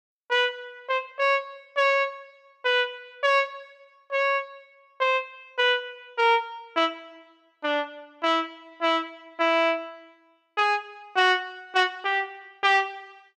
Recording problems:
none

